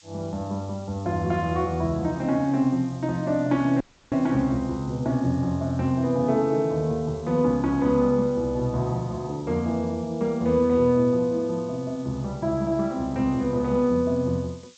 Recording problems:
lossy compression; G.722, log-spectral distance 4 dB
background hiss; slope +4 dB per octave, SNR 27 dB
dropout; at 4 s

